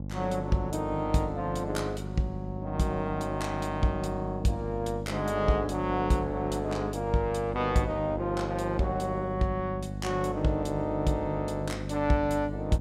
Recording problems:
hum; 50 Hz, harmonics up to 800 Hz, SNR 7 dB

